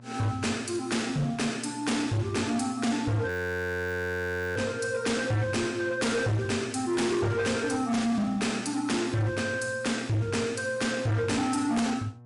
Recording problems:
lossy compression; MP3, log-spectral distance 3 dB
distorted audio; hard clipping, signal-to-distortion ratio 8 dB
electrical hum; 60 Hz, harmonics up to 1.1 kHz, SNR 21 dB
frozen audio; at 3.5 s for 1.5 s

